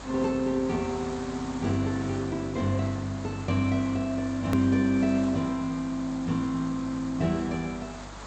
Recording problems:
lossy codec; G.722, log-spectral distance 10 dB, nothing above 19.5 kHz
hum; 50 Hz, harmonics up to 350 Hz, SNR 20 dB
hiss; SNR 15 dB
hard cut with a click; at 4.5 s

